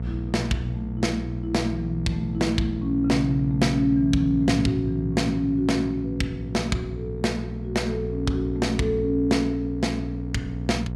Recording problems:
hum; 60 Hz, harmonics up to 660 Hz, SNR 7 dB

